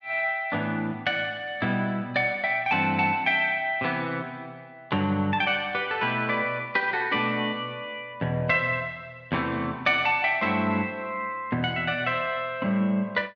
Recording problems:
none

